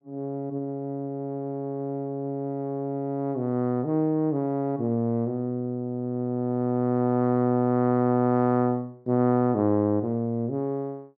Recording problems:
none

